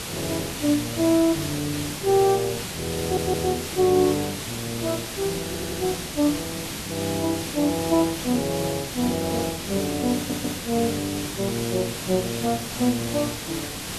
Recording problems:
hiss; slope -2 dB per octave, SNR 6 dB
stutter; at 3 s, at 5.5 s and at 10 s

